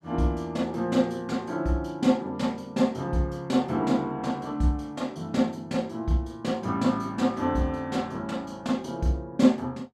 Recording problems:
none

